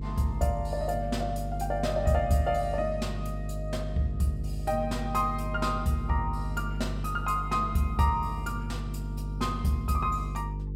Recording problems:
hum; 50 Hz, harmonics up to 450 Hz, SNR 5 dB

